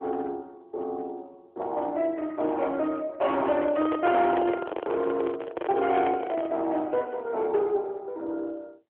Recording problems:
phone line; 280 Hz to 3.8 kHz, AMR-NB
distortion; hard clipping, signal-to-distortion ratio 13 dB
microphone handling noise; from 3.5 to 6.5 s; peak +1 dB vs average level

